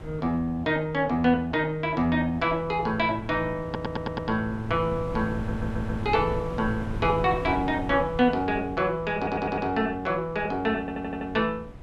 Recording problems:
wind noise; below 260 Hz, SNR 13 dB
audio stuttering; 4 times, first at 3.5 s

